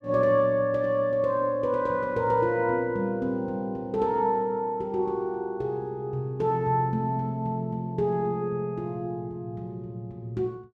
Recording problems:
none

